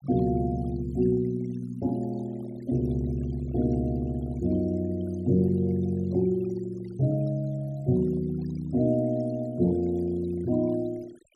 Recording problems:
noise reduction artefacts; signal-to-artefact ratio 22 dB

